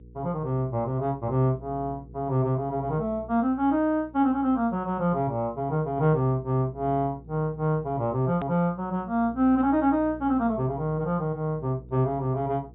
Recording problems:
low-pass filter; nothing above 3.7 kHz
hum; 60 Hz, harmonics up to 480 Hz, SNR 20 dB
click at an edit; at 8.5 s

